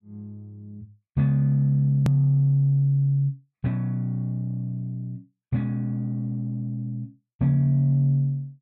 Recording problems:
click at an edit; at 2 s

